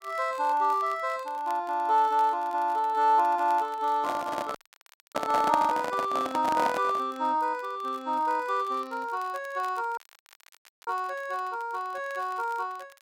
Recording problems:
crackling; vinyl, SNR 27 dB
microphone handling noise; from 4 to 7 s; peak +2 dB vs average level
audio cutting out; at 4.5 s for 0.5 s and at 10 s for 1 s

